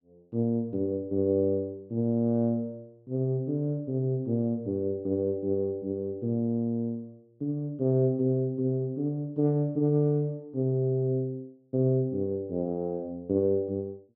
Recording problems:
none

